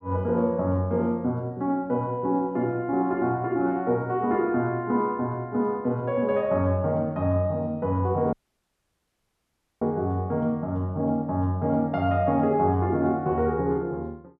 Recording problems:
audio cutting out; at 8.5 s for 1.5 s

